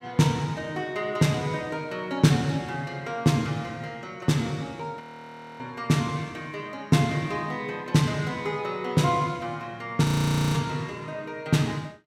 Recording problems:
audio freezing; at 5 s for 0.5 s and at 10 s for 0.5 s

